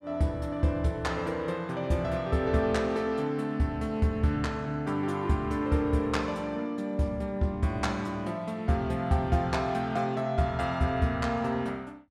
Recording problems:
none

